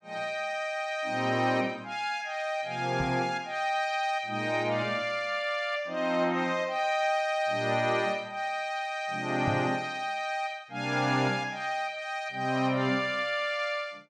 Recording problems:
knock on the microphone; at 3 s and at 9.5 s; peak 0 dB vs average level

